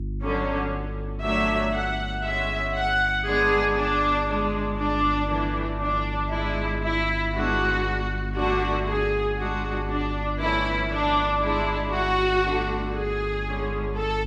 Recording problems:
electrical hum; 50 Hz, harmonics up to 350 Hz, SNR 7 dB

